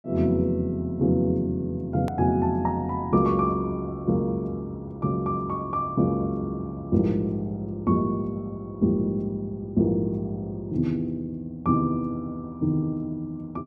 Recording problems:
hard cut with a click; at 2 s

